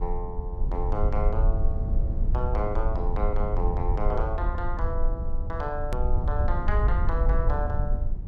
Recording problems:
rumble; below 62 Hz, SNR -5 dB
edit click; at 6 s

